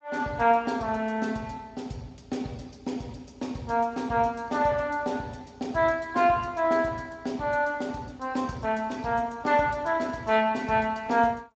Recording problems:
lossy codec; Speex, log-spectral distance 3 dB, nothing above 7.3 kHz

